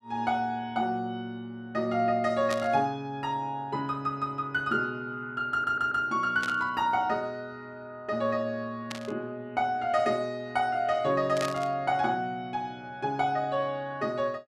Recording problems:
static burst; 4 times, first at 2.5 s; peak -2 dB vs average level
audio stuttering; at 5.5 s

